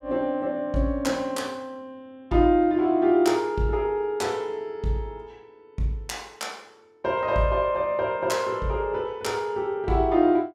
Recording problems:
none

